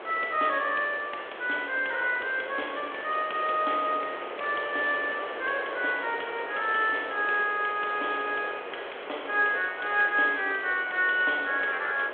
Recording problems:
phone line; 340 Hz to 3.4 kHz, G.726
background hiss; SNR 11 dB

